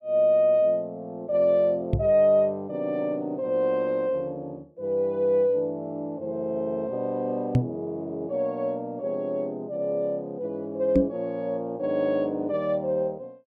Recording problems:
microphone thump; at 2 s, at 7.5 s and at 11 s; peak +8 dB vs average level

